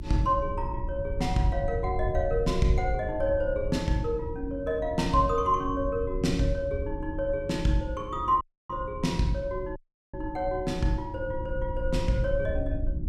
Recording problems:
hum; 60 Hz, harmonics up to 360 Hz, SNR 17 dB
low-frequency rumble; below 86 Hz, SNR 8 dB
audio cutting out; at 8.5 s and at 10 s

